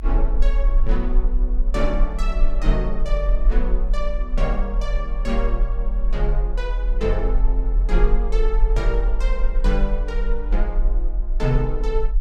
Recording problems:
low-frequency rumble; below 40 Hz, SNR -5 dB

